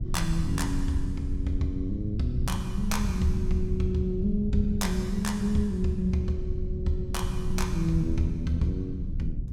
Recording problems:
rumble; below 100 Hz, SNR 3 dB

